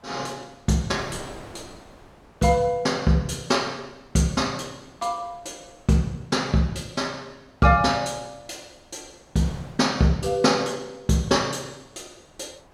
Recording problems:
wind noise; below 1.1 kHz, SNR 24 dB

